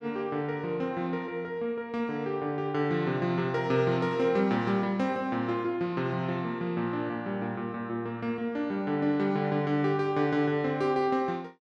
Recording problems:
none

